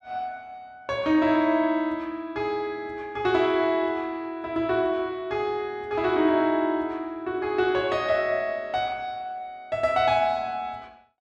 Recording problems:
none

